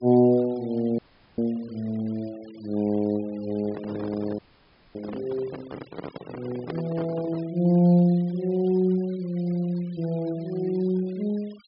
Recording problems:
treble cut off; nothing above 5.5 kHz
denoising artefacts; signal-to-artefact ratio 24 dB
frozen audio; at 1 s and at 4.5 s for 0.5 s
handling noise; from 3.5 to 7.5 s; peak -4 dB vs average level

